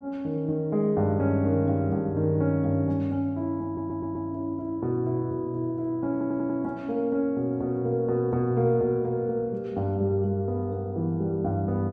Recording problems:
stutter; at 3.5 s and at 6 s

